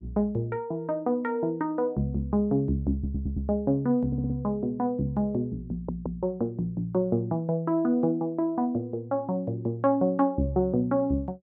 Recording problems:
audio stuttering; at 3 s, at 4 s and at 5.5 s

